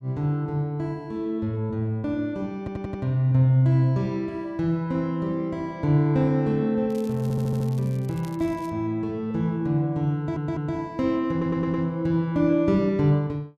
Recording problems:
stutter; 4 times, first at 2.5 s
crackle; from 7 to 8.5 s; loose cable, SNR 25 dB

